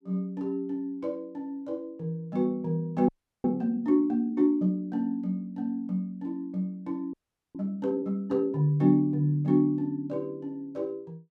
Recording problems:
frozen audio; at 3 s and at 7 s

